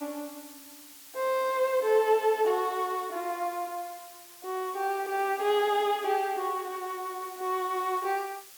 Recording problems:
background hiss; slope +2 dB per octave, SNR 18 dB

